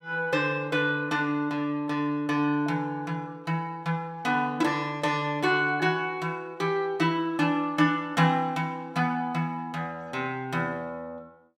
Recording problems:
none

